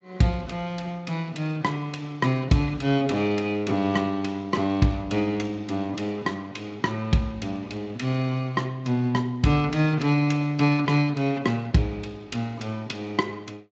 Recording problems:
lossy compression; Speex, log-spectral distance 2 dB

